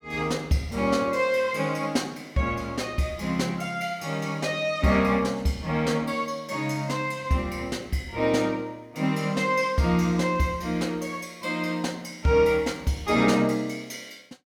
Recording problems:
none

